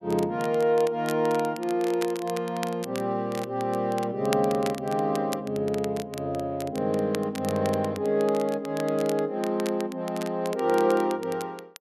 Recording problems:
crackle; vinyl, SNR 16 dB

